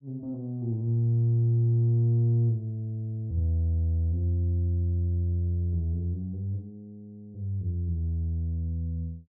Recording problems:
none

